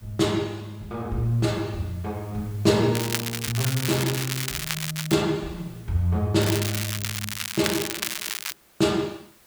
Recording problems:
background hiss; slope -2 dB per octave, SNR 27 dB
crackle; from 3 to 5 s and from 6.5 to 8.5 s; loose cable, SNR 3 dB

